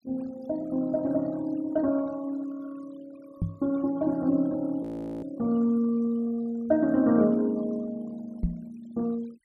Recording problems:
noise reduction artefacts; signal-to-artefact ratio 24 dB
microphone bump; at 3.5 s and at 8.5 s; peak +3 dB vs average level
frozen audio; at 5 s

